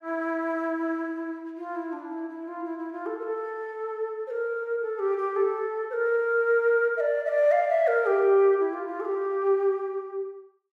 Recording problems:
none

